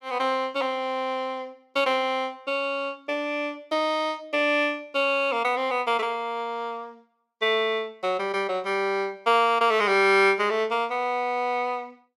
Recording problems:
none

